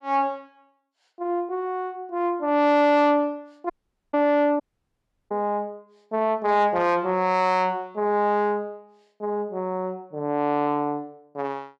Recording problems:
distortion; soft clipping, signal-to-distortion ratio 12 dB
dropout; at 3.5 s and at 4.5 s for 0.5 s

